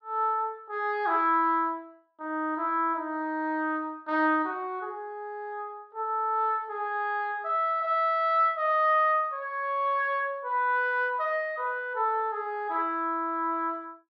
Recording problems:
none

